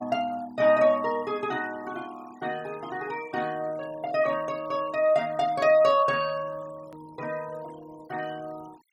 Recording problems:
noise reduction artefacts; signal-to-artefact ratio 23 dB
hard cut with a click; at 7 s

